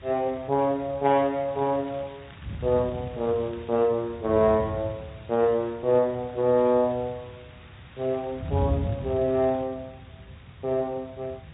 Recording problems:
low-pass filter; nothing above 3.7 kHz
codec artefacts; Speex, log-spectral distance 5 dB
background hiss; SNR 26 dB
wind noise; below 150 Hz, SNR 11 dB
crackling; from 1.5 to 4 s and from 8 to 9.5 s; loose cable, SNR 27 dB

